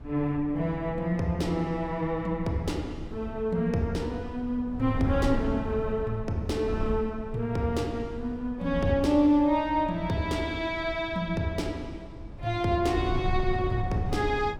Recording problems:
wind noise; below 120 Hz, SNR 10 dB

